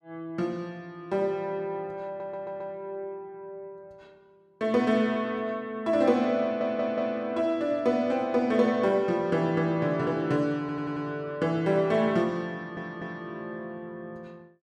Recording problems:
audio stuttering; 4 times, first at 2 s

